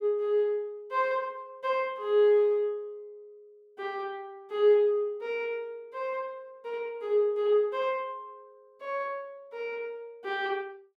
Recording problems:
none

